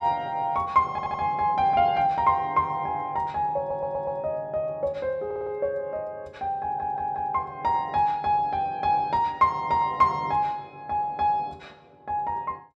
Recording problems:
audio stuttering; 4 times, first at 1 s

